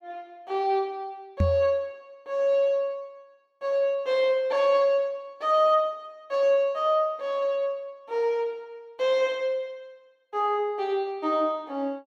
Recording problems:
microphone thump; at 1.5 s; peak +5 dB vs average level

